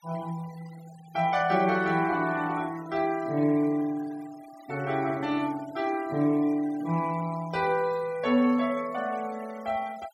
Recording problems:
noise reduction artefacts; signal-to-artefact ratio 21 dB

